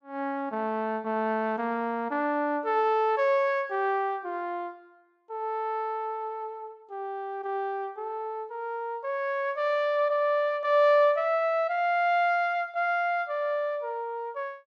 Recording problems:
none

